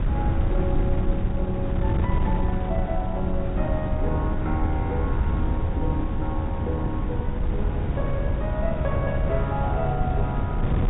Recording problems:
treble cut off; nothing above 4 kHz
wind noise; below 120 Hz, SNR -3 dB

